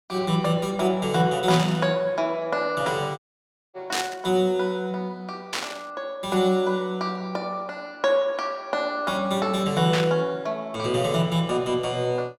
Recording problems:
static burst; 4 times, first at 1.5 s; peak +1 dB vs average level
audio cutting out; at 3 s for 0.5 s

